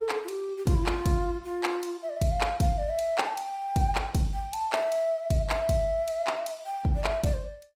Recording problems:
lossy codec; Opus, log-spectral distance 2 dB

